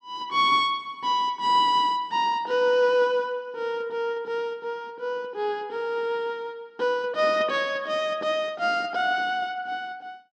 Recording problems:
none

